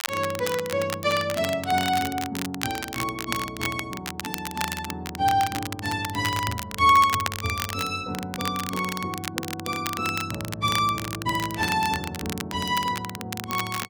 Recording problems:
crackle; vinyl, SNR 8 dB

